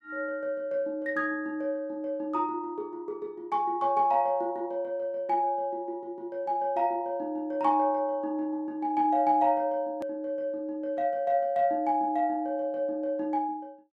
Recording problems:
click at an edit; at 10 s

